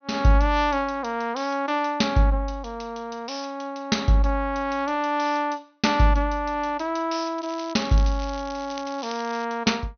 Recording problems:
treble missing; nothing above 6.2 kHz
crackling; from 7.5 to 9.5 s; loose cable, SNR 17 dB

